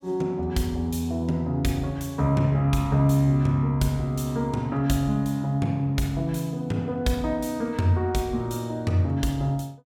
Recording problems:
none

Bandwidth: 17.5 kHz